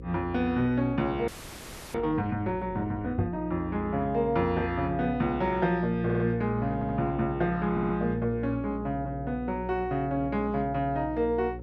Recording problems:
electrical hum; 60 Hz, harmonics up to 540 Hz, SNR 13 dB
audio freezing; at 1.5 s for 0.5 s
knock on the microphone; at 3 s; peak +3 dB vs average level
stutter; at 6 s, at 6.5 s and at 7.5 s

